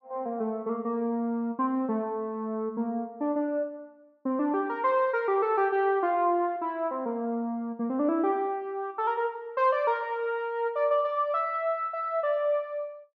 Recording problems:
low-pass filter; nothing above 8 kHz

